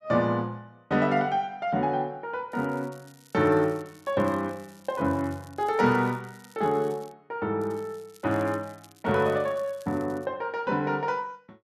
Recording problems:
crackling; from 2.5 to 7 s and from 7.5 to 10 s; loose cable, SNR 27 dB

